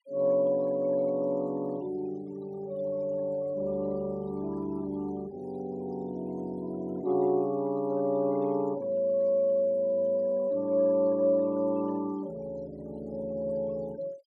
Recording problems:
denoising artefacts; signal-to-artefact ratio 28 dB

